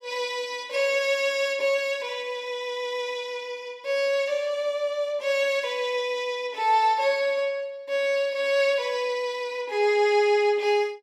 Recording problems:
none

